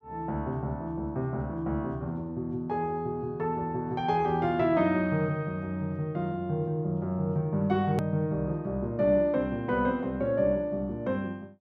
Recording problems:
edit click; at 8 s

